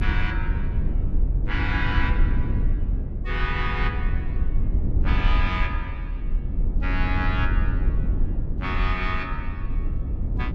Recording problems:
low-frequency rumble; below 74 Hz, SNR -3 dB

